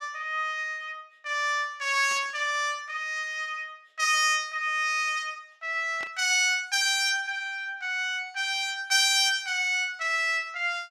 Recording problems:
burst of static; at 2 s and at 6 s; peak -11 dB vs average level

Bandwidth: 14.5 kHz